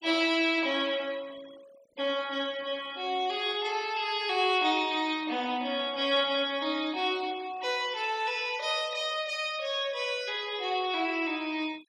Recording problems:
denoising artefacts; signal-to-artefact ratio 22 dB

